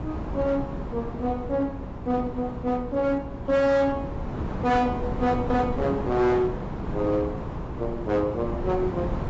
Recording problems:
lossy compression; AAC, log-spectral distance 2 dB, nothing above 7.6 kHz
distortion; hard clipping, signal-to-distortion ratio 11 dB
hum; 60 Hz, harmonics up to 300 Hz, SNR 18 dB
wind on the microphone; below 450 Hz, SNR 7 dB

